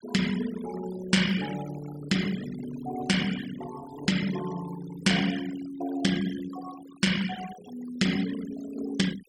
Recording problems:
noise reduction artefacts; signal-to-artefact ratio 12 dB

